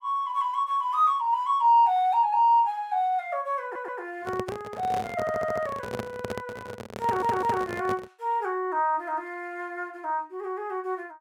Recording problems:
audio stuttering; at 3.5 s, at 5 s and at 7 s
microphone handling noise; from 4 to 8 s; peak -3 dB vs average level

